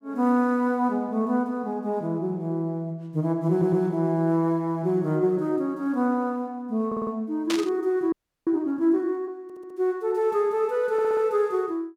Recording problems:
stutter; 4 times, first at 3.5 s
static burst; at 7.5 s; peak 0 dB vs average level
audio freezing; at 8 s

